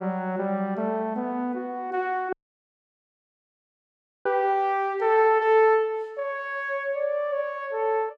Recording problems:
audio cutting out; at 2.5 s for 2 s

